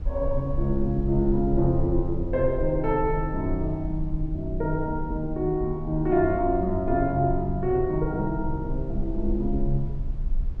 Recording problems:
rumble; below 50 Hz, strongest tone 18 Hz, SNR 8 dB

